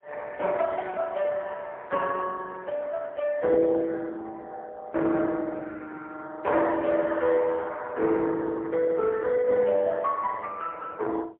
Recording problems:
telephone audio; 280 Hz to 3 kHz, AMR-NB, then MP3

